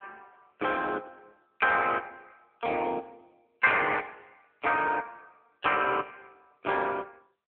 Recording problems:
telephone audio; 320 Hz to 3.5 kHz, AMR-NB

